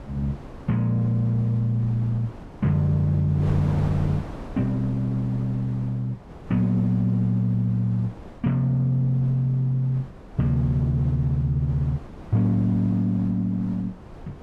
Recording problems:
wind on the microphone; below 470 Hz, SNR 16 dB

